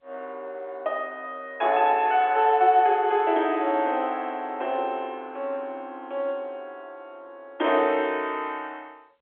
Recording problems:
telephone audio; 280 Hz to 3.5 kHz, G.711

